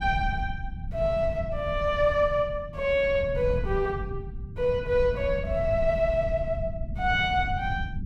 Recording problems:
low-frequency rumble; below 120 Hz, SNR 8 dB

